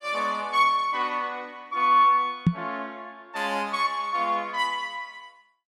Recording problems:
knock on the microphone; at 2.5 s; peak +8 dB vs average level

